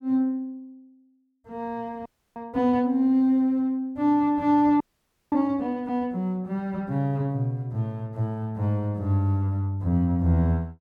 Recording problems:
audio freezing; at 2 s and at 5 s for 0.5 s

